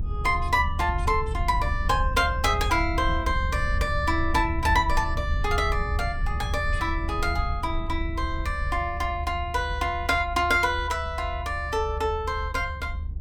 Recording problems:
low-frequency rumble; below 76 Hz, SNR 5 dB

